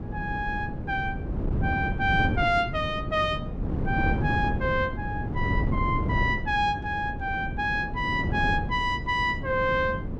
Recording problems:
wind on the microphone; below 250 Hz, SNR 4 dB

